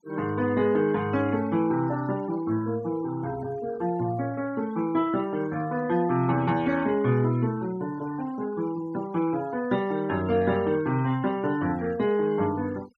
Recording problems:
noise reduction artefacts; signal-to-artefact ratio 21 dB

